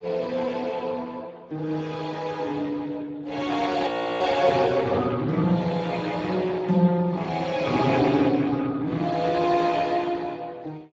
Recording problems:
lossy compression; Speex, log-spectral distance 4 dB
frozen audio; at 4 s

